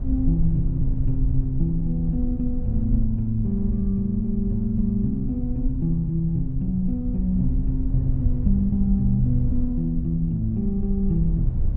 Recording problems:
rumble; below 74 Hz, SNR 3 dB

